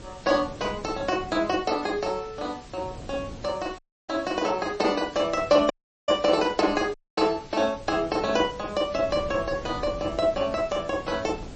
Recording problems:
lossy compression; MP3, log-spectral distance 5 dB, nothing above 8 kHz
hiss; slope +2 dB per octave, SNR 24 dB
wind noise; below 370 Hz, SNR 17 dB
audio cutting out; at 4 s, at 5.5 s and at 7 s

